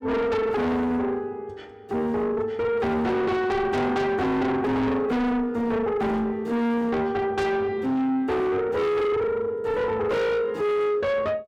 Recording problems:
distorted audio; soft clipping, signal-to-distortion ratio 7 dB

